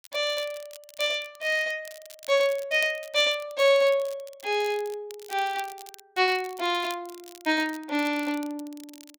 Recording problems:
crackling; vinyl, SNR 20 dB

